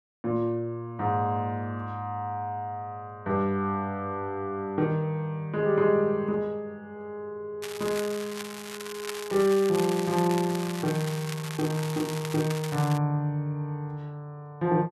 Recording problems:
crackle; from 7.5 to 13 s; loose cable, SNR 10 dB

